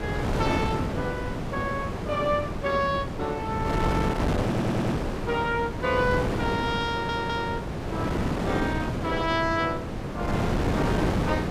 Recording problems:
wind on the microphone; below 610 Hz, SNR -1 dB
audio stuttering; at 4.5 s and at 7 s

